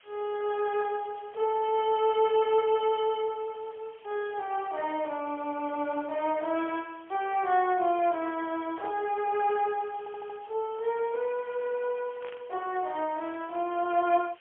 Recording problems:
phone line; 320 Hz to 3.3 kHz, AMR-NB, then MP3
hiss; SNR 26 dB
audio stuttering; at 10 s
static burst; at 12 s; peak -13 dB vs average level

